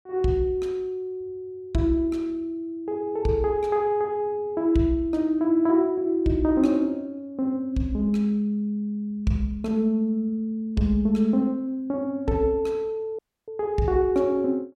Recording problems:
audio cutting out; at 13 s

